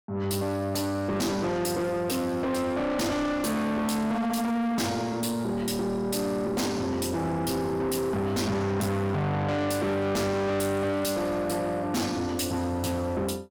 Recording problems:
distortion; soft clipping, signal-to-distortion ratio 6 dB

